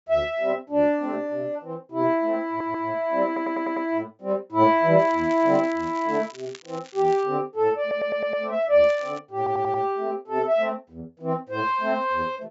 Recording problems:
treble missing; nothing above 8 kHz
audio stuttering; 4 times, first at 2.5 s
crackling; from 5 to 7.5 s and at 9 s; loose cable, SNR 23 dB

